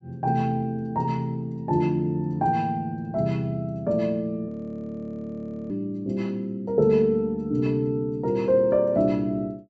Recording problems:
treble cut off; nothing above 8 kHz
audio freezing; at 4.5 s for 1 s

